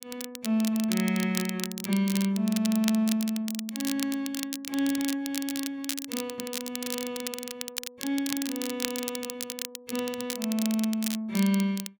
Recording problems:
crackle; vinyl, SNR 6 dB

